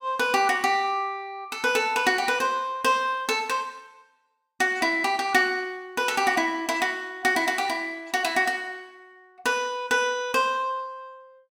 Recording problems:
none

